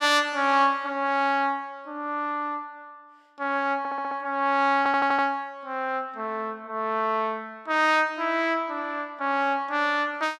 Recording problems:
stutter; at 4 s and at 5 s

